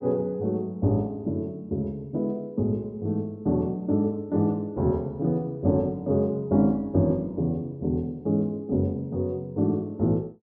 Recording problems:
none

